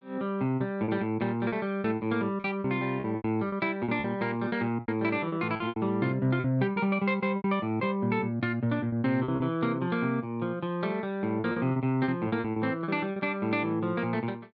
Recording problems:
packet loss; 10% of the sound replaced, filled with repeated pitch periods

